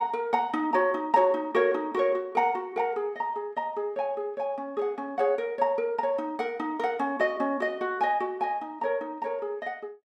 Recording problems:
none

